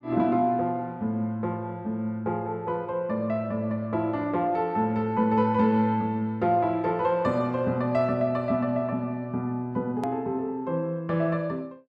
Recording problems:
hard cut with a click; at 10 s

